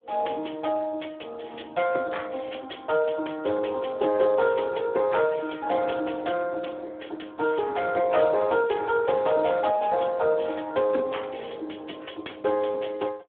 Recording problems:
telephone audio; 280 Hz to 3.6 kHz, Speex

